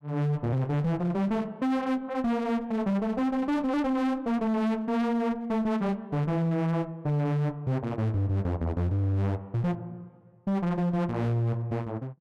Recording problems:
distortion; hard clipping, uneven, signal-to-distortion ratio 5 dB

